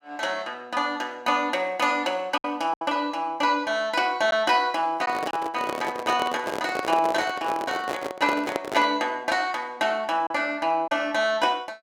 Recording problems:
lost packets; 2% of the sound replaced, filled with silence
microphone handling noise; from 5 to 9 s; peak 0 dB vs average level

